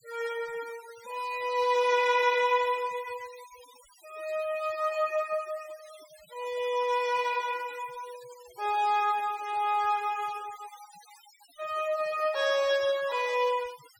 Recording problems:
denoising artefacts; signal-to-artefact ratio 20 dB

